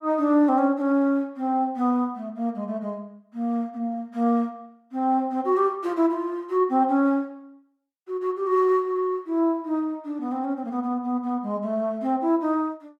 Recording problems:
none

